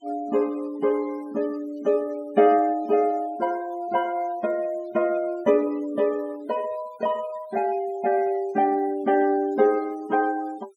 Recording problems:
noise reduction artefacts; signal-to-artefact ratio 23 dB

